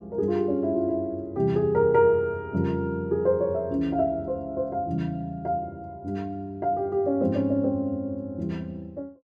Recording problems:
none

